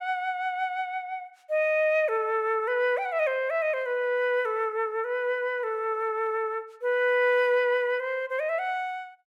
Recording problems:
none

